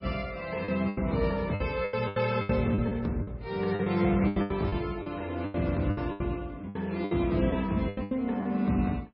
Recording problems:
lossy compression; MP3, log-spectral distance 2 dB, nothing above 5.2 kHz
lost packets; 14% of the sound replaced, filled with the last packet

